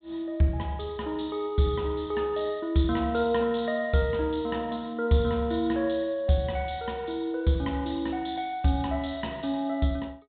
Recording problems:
treble cut off; nothing above 4 kHz

